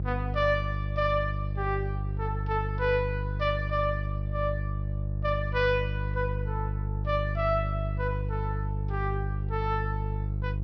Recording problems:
treble cut off; nothing above 6 kHz
hum; 50 Hz, harmonics up to 350 Hz, SNR 1 dB

